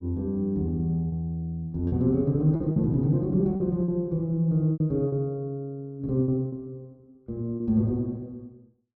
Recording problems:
lost packets; 6% of the sound replaced, filled with repeated pitch periods

